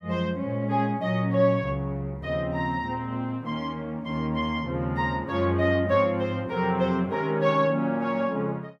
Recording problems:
none

